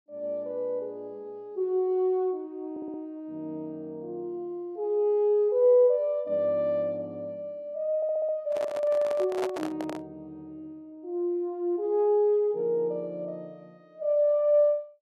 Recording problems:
audio stuttering; at 2.5 s and at 8 s
handling noise; from 8.5 to 10 s; peak -1 dB vs average level

